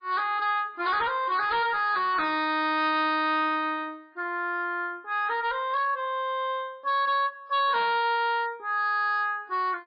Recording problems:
lossy compression; MP3, log-spectral distance 2 dB, nothing above 4.2 kHz
distortion; hard clipping, signal-to-distortion ratio 11 dB

